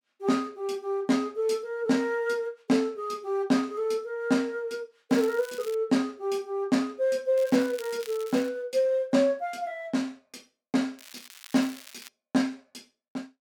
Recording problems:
crackling; at 5 s, from 7.5 to 8.5 s and from 11 to 12 s; loose cable, SNR 18 dB

